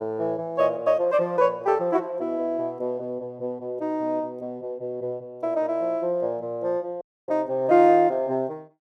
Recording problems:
dropout; at 7 s

